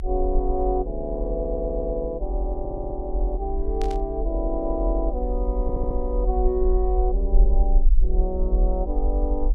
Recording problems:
rumble; below 44 Hz, SNR -1 dB
audio stuttering; at 1.5 s, at 2.5 s and at 5.5 s
burst of static; at 4 s; peak -8 dB vs average level

